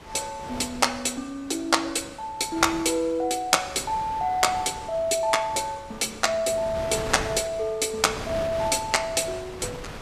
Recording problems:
wind noise; below 1.7 kHz, SNR 14 dB

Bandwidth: 14.5 kHz